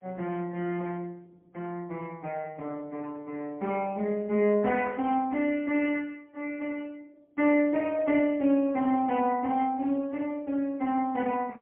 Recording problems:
phone line; 220 Hz to 3.1 kHz, AMR-NB, then MP3

